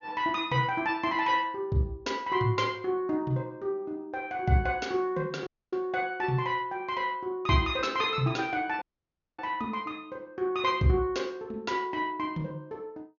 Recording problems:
treble missing; nothing above 6.8 kHz
dropout; at 5.5 s and at 9 s for 0.5 s

